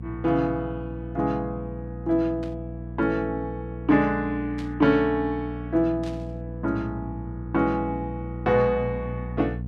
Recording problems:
electrical hum; 60 Hz, harmonics up to 480 Hz, SNR 9 dB
burst of static; at 2.5 s, at 4.5 s and at 6 s; peak -13 dB vs average level

